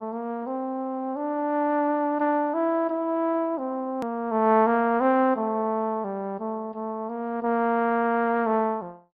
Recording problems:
treble cut off; nothing above 5.5 kHz
lossy codec; Opus, log-spectral distance 2 dB
edit click; at 4 s

